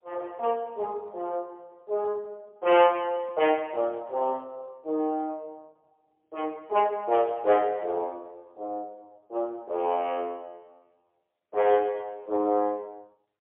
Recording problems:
telephone audio; 320 Hz to 3.3 kHz, AMR-NB, then MP3

